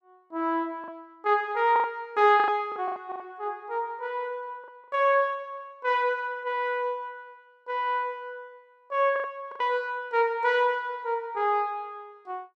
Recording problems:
lost packets; 5% of the sound replaced, filled with the last packet

